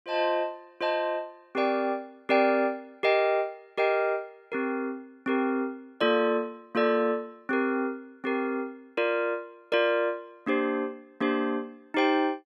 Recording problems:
none

